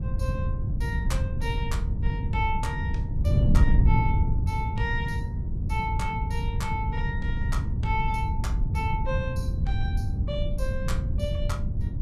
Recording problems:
wind noise; below 120 Hz, SNR -6 dB

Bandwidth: 15.5 kHz